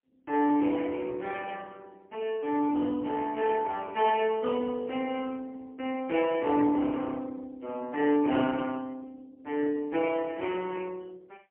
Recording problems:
phone line; 260 Hz to 3.2 kHz, AMR-NB, then MP3

